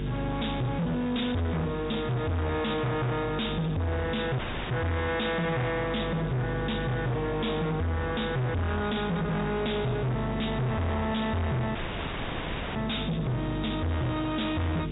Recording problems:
treble cut off; nothing above 4 kHz
distorted audio; hard clipping, signal-to-distortion ratio 5 dB
electrical hum; 50 Hz, harmonics up to 500 Hz, SNR 7 dB
hiss; SNR 20 dB
audio cutting out; at 4.5 s and at 12 s for 1 s

